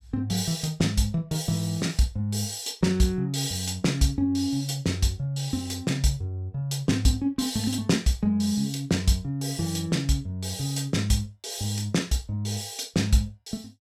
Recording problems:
none

